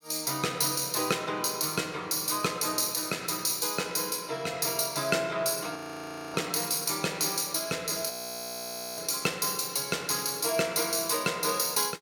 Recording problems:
frozen audio; at 6 s for 0.5 s and at 8 s for 1 s

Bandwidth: 17.5 kHz